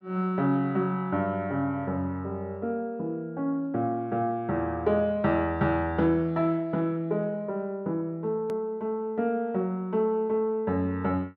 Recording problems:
edit click; at 8.5 s

